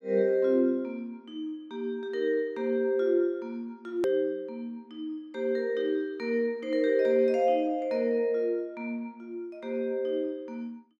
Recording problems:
hard cut with a click; at 4 s

